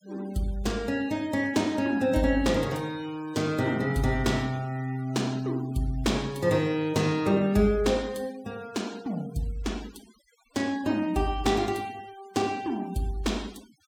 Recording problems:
denoising artefacts; signal-to-artefact ratio 22 dB

